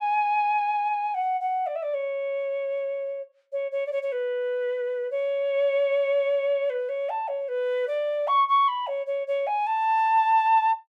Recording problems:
none

